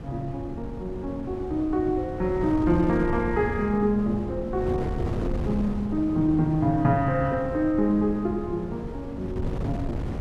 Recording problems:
wind on the microphone; below 260 Hz, SNR 7 dB

